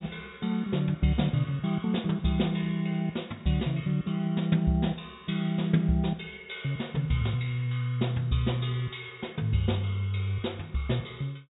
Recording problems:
treble missing; nothing above 4 kHz

